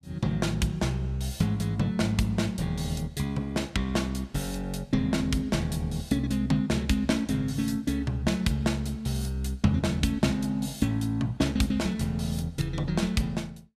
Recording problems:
none

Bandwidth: 15.5 kHz